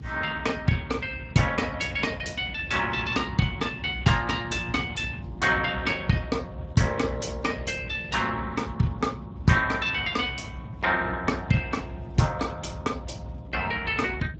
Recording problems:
codec artefacts; Speex, log-spectral distance 4 dB, nothing above 7.6 kHz
low-frequency rumble; below 170 Hz, SNR 12 dB

